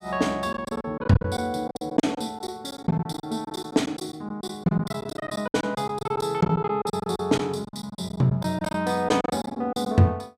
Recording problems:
packet loss; 16% of the sound replaced, filled with silence

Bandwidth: 15.5 kHz